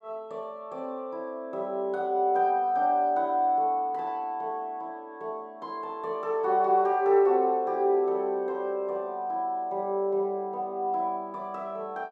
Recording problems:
none

